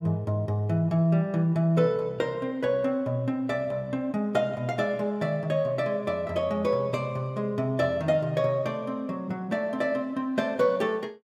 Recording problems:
none

